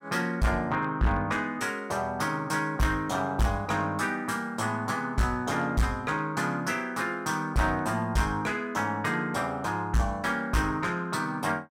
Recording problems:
distorted audio; hard clipping, signal-to-distortion ratio 11 dB

